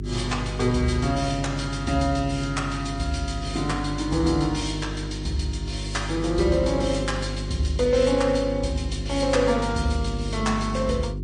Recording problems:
codec artefacts; MP3, log-spectral distance 3 dB, nothing above 9.5 kHz
hum; 50 Hz, harmonics up to 400 Hz, SNR 7 dB

